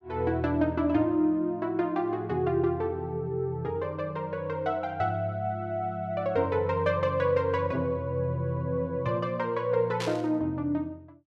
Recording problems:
static burst; at 10 s; peak -3 dB vs average level

